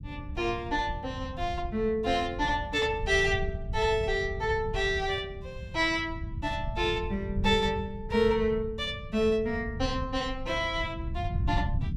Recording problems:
rumble; below 110 Hz, SNR 8 dB

